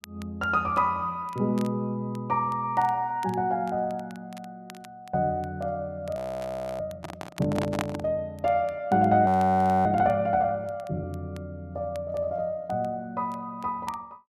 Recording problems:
crackle; vinyl, SNR 27 dB
frozen audio; at 6 s for 0.5 s and at 9.5 s for 0.5 s
microphone handling noise; from 7 to 8 s; peak 0 dB vs average level

